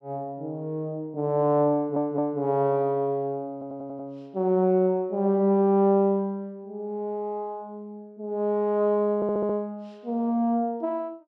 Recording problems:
stutter; at 2 s, at 3.5 s and at 9 s

